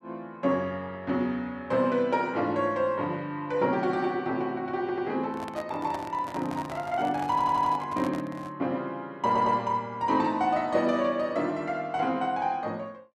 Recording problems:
stutter; at 5 s, at 7.5 s and at 9.5 s
handling noise; from 5.5 to 8.5 s; peak -6 dB vs average level

